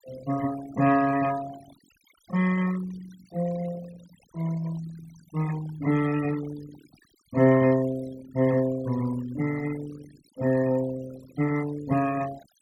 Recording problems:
noise reduction artefacts; signal-to-artefact ratio 17 dB

